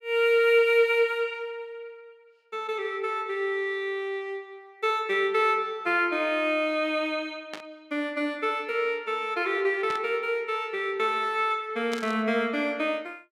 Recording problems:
static burst; at 7.5 s, at 10 s and at 12 s; peak -6 dB vs average level

